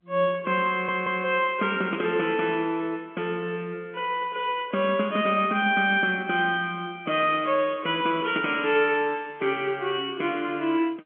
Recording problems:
phone line; 170 Hz to 3.4 kHz, G.711
stutter; at 0.5 s

